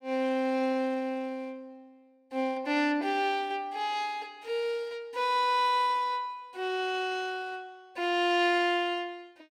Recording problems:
none

